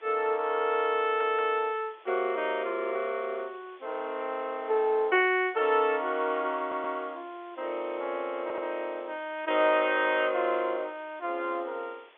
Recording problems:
telephone audio; 300 Hz to 3.6 kHz, G.711
background hiss; SNR 27 dB
stutter; at 1 s, at 6.5 s and at 8.5 s

